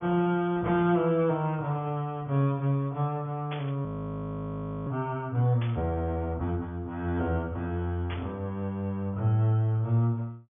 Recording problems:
low-pass filter; nothing above 3.5 kHz
burst of static; at 3.5 s, at 5.5 s and at 8 s; peak -7 dB vs average level
audio freezing; at 4 s for 1 s

